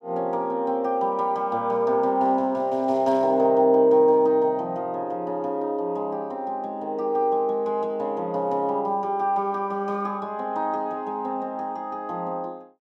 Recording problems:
none

